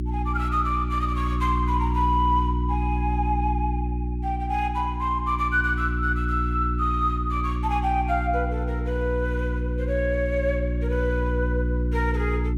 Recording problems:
mains hum; 60 Hz, harmonics up to 360 Hz, SNR 0 dB

